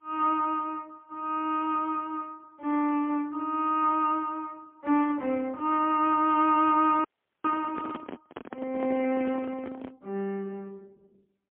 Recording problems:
phone line; 260 Hz to 3.2 kHz, AMR-NB, then MP3
handling noise; from 7 to 10 s; peak -7 dB vs average level
audio freezing; at 7 s

